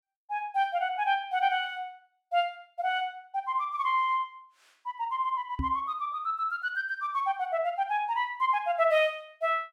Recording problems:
knock on the microphone; at 5.5 s; peak 0 dB vs average level

